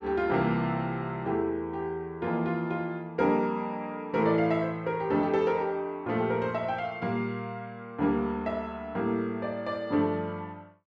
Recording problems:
none

